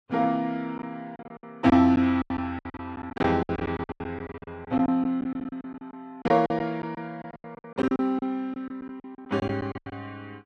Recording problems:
codec artefacts; Vorbis, log-spectral distance 2 dB
packet loss; 18% of the sound replaced, filled with silence

